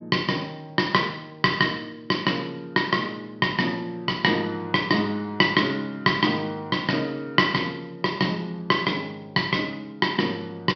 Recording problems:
treble cut off; nothing above 5.5 kHz

